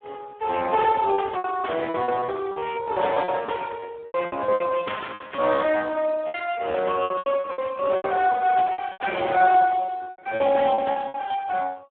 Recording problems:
telephone audio; 340 Hz to 2.8 kHz, Speex
packet loss; 15% of the sound replaced, filled with repeated pitch periods

